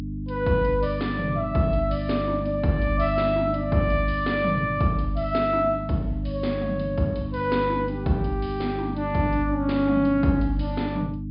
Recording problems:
low-pass filter; nothing above 5 kHz
electrical hum; 50 Hz, harmonics up to 300 Hz, SNR 6 dB

